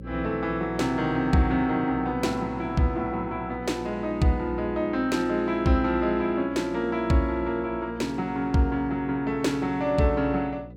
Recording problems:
hum; 60 Hz, harmonics up to 540 Hz, SNR 16 dB

